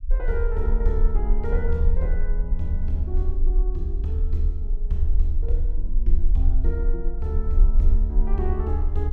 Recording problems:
rumble; below 38 Hz, strongest tone 24 Hz, SNR -2 dB

